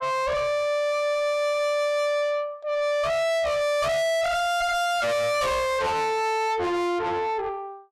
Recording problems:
distorted audio; soft clipping, signal-to-distortion ratio 5 dB

